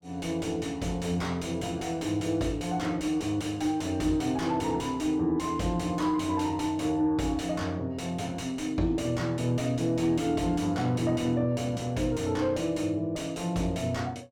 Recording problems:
distortion; soft clipping, signal-to-distortion ratio 10 dB

